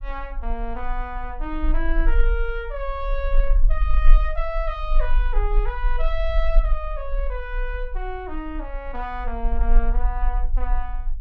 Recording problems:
rumble; below 38 Hz, strongest tone 20 Hz, SNR -5 dB

